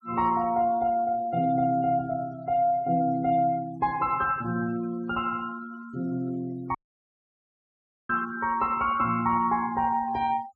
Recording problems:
noise reduction artefacts; signal-to-artefact ratio 22 dB
dropout; at 7 s for 1.5 s

